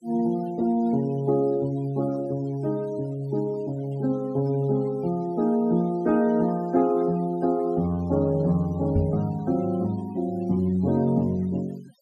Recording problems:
denoising artefacts; signal-to-artefact ratio 25 dB
knock on the microphone; at 9 s; peak +3 dB vs average level

